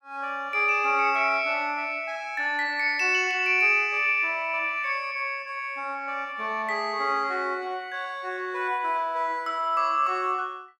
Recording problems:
none

